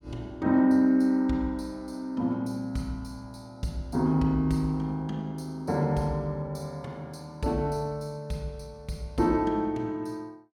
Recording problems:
none

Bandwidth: 17.5 kHz